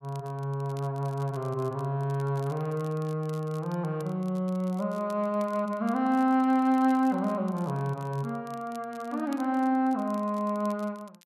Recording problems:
crackle; vinyl, SNR 27 dB

